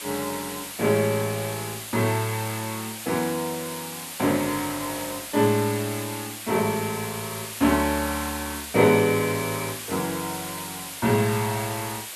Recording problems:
background hiss; SNR 8 dB

